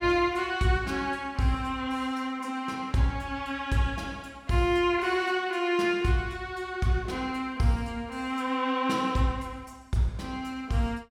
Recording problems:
none

